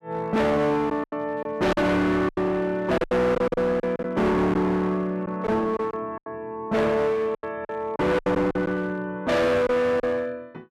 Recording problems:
distortion; hard clipping, uneven, signal-to-distortion ratio 5 dB
packet loss; 9% of the sound replaced, filled with silence

